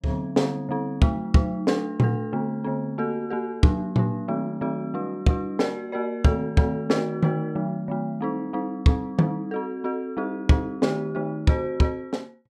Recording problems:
none

